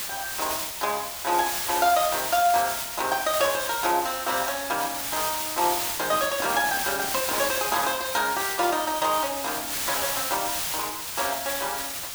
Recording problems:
hiss; slope +2 dB per octave, SNR 2 dB
microphone handling noise; from 6 to 8 s; peak -7 dB vs average level

